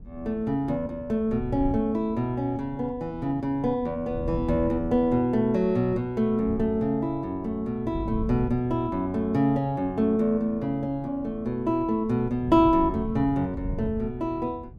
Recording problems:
wind on the microphone; below 140 Hz, SNR 14 dB

